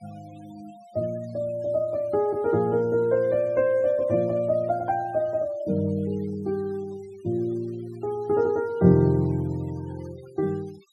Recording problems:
denoising artefacts; signal-to-artefact ratio 27 dB

